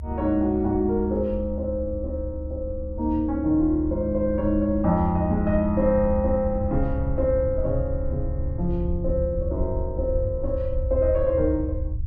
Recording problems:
rumble; below 74 Hz, SNR 6 dB

